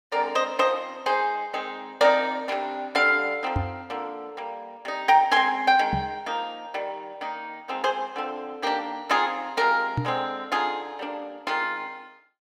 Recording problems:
knock on the microphone; at 3.5 s, at 6 s and at 10 s; peak +2 dB vs average level

